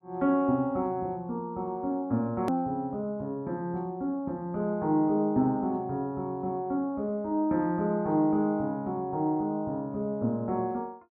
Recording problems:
hard cut with a click; at 2.5 s

